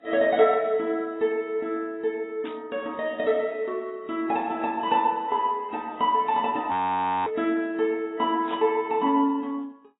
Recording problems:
lossy codec; AAC, log-spectral distance 2 dB
static burst; at 2.5 s, at 7.5 s and at 8.5 s; peak -12 dB vs average level
audio freezing; at 6.5 s for 0.5 s

